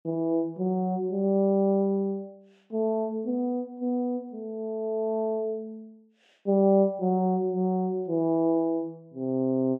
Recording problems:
none

